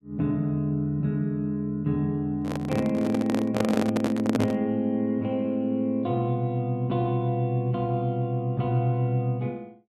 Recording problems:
microphone handling noise; from 2.5 to 4.5 s; peak +4 dB vs average level

